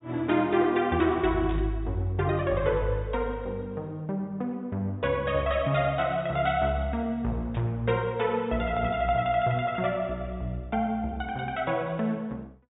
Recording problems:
treble missing; nothing above 4 kHz
static burst; at 1.5 s, at 5 s and at 7.5 s; peak -13 dB vs average level

